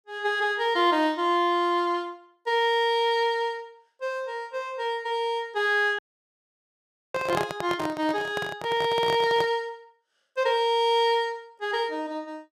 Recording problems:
audio cutting out; at 6 s for 1 s
handling noise; from 7 to 9.5 s; peak +1 dB vs average level

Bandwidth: 15 kHz